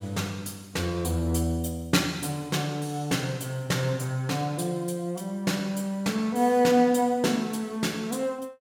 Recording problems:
none

